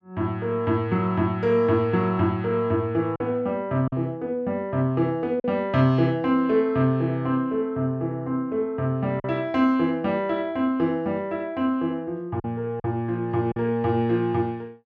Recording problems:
lost packets; 1.9% of the sound replaced, filled with silence

